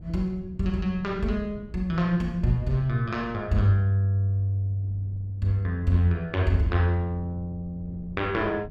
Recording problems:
wind noise; below 160 Hz, SNR 19 dB

